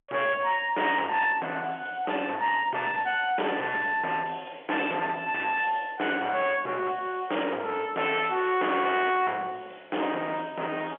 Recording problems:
phone line; 320 Hz to 3.3 kHz, G.711
distorted audio; hard clipping, uneven, signal-to-distortion ratio 8 dB

